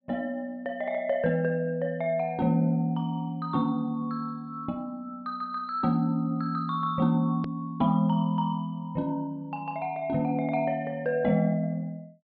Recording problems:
treble cut off; nothing above 5.5 kHz
hard cut with a click; at 7.5 s

